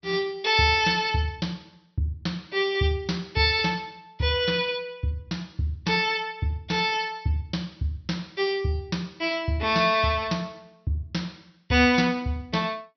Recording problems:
treble cut off; nothing above 6 kHz

